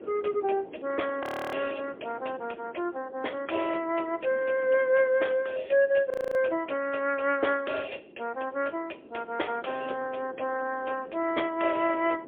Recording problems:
telephone audio; 300 Hz to 3.4 kHz, AMR-NB, then MP3
wind noise; below 510 Hz, SNR 19 dB
audio freezing; at 1 s and at 6 s

